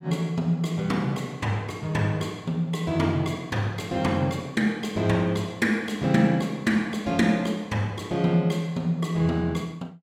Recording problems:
none

